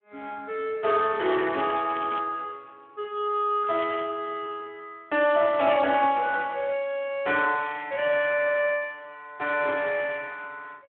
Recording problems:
phone line; 240 Hz to 3.3 kHz, Speex
crackling; at 1 s and at 3.5 s; loose cable, SNR 17 dB

